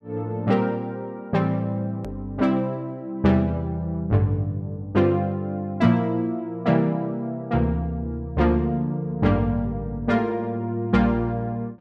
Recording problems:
hard cut with a click; at 2 s

